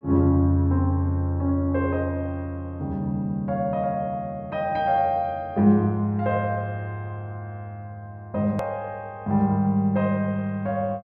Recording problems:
hard cut with a click; at 8.5 s

